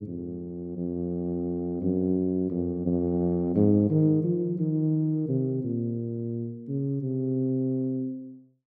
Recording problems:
none

